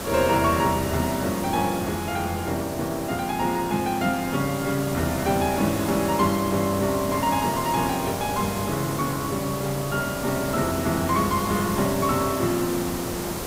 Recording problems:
background hiss; slope -5 dB per octave, SNR 6 dB

